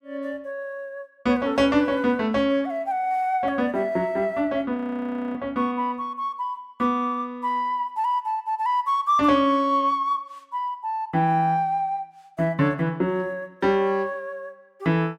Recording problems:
audio freezing; at 5 s for 0.5 s

